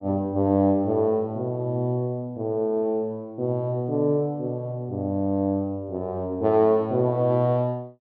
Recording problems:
none

